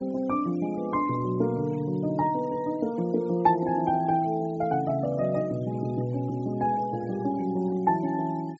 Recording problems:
treble cut off; nothing above 7.5 kHz
noise reduction artefacts; signal-to-artefact ratio 25 dB

